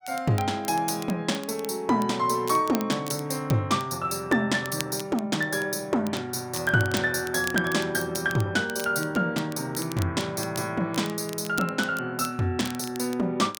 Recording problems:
crackling; vinyl, SNR 16 dB

